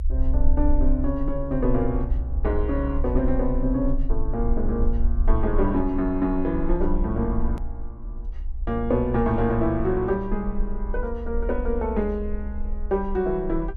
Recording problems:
rumble; below 60 Hz, strongest tone 20 Hz, SNR 4 dB
hard cut with a click; at 7.5 s

